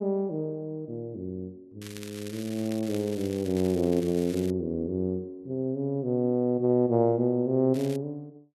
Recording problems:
crackle; from 2 to 4.5 s and at 7.5 s; loose cable, SNR 18 dB

